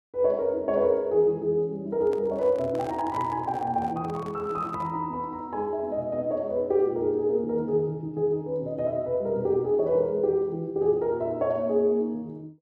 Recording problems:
microphone handling noise; from 2 to 5 s; peak -10 dB vs average level

